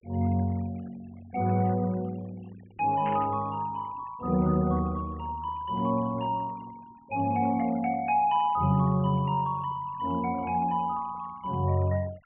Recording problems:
treble cut off; nothing above 3 kHz
denoising artefacts; signal-to-artefact ratio 25 dB
static burst; at 3 s; peak -10 dB vs average level

